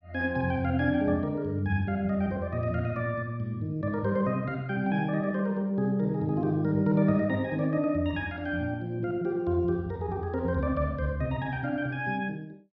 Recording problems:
none

